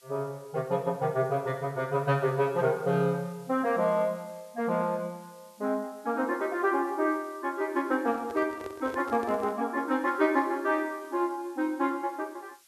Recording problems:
hiss; slope +3 dB per octave, SNR 27 dB
microphone handling noise; from 8 to 9.5 s; peak -8 dB vs average level

